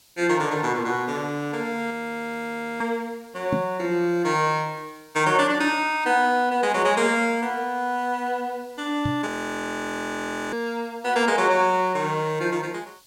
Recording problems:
hiss; SNR 29 dB
frozen audio; at 2 s for 1 s and at 9.5 s for 1.5 s
microphone bump; at 3.5 s and at 9 s; peak +2 dB vs average level

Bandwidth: 16.5 kHz